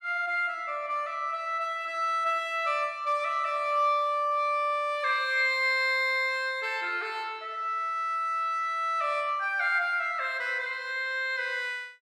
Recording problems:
none

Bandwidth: 12.5 kHz